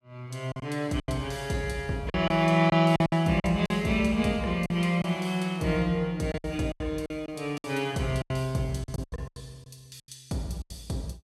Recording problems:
packet loss; 11% of the sound replaced, filled with silence

